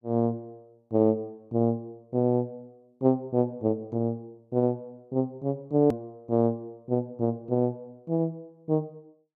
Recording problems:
edit click; at 6 s

